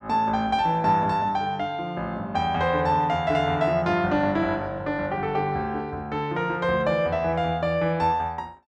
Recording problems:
none

